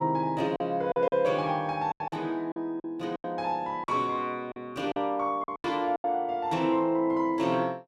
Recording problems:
lost packets; 9% of the sound replaced, filled with silence

